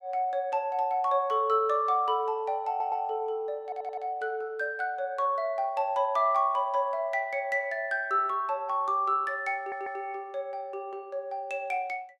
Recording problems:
audio stuttering; at 2.5 s, at 3.5 s and at 9.5 s

